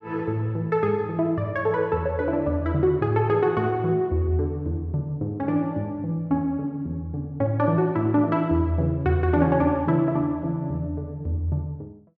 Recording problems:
none

